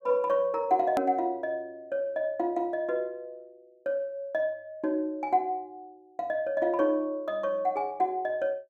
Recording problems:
edit click; at 1 s

